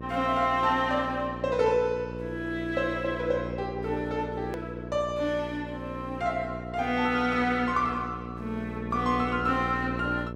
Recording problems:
hum; 60 Hz, harmonics up to 1.1 kHz, SNR 9 dB
edit click; at 4.5 s

